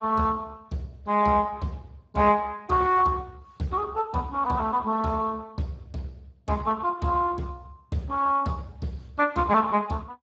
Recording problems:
lossy codec; Speex, log-spectral distance 3 dB

